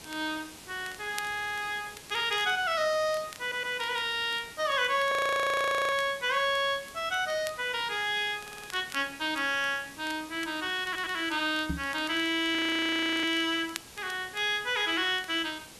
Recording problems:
hiss; SNR 18 dB
crackling; vinyl, SNR 20 dB
audio stuttering; 4 times, first at 1.5 s
frozen audio; at 5 s for 1 s and at 13 s for 0.5 s
knock on the microphone; at 12 s; peak 0 dB vs average level

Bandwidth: 12.5 kHz